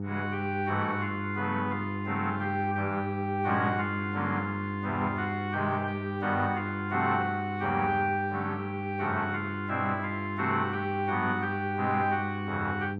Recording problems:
hum; 50 Hz, harmonics up to 900 Hz, SNR 5 dB

